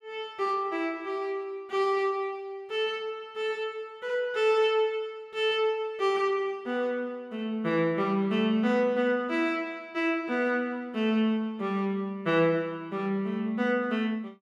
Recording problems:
none

